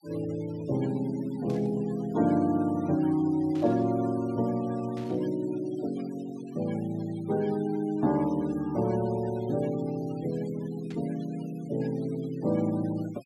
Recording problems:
noise reduction artefacts; signal-to-artefact ratio 20 dB
burst of static; 4 times, first at 1.5 s; peak -15 dB vs average level

